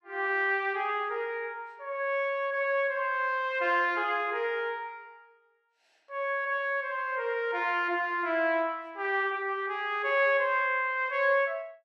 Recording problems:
none

